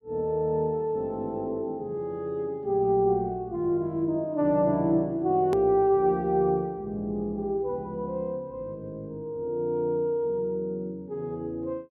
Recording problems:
treble cut off; nothing above 8 kHz
edit click; at 5.5 s

